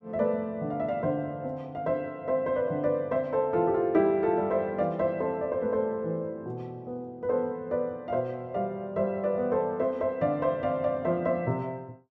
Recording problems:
none

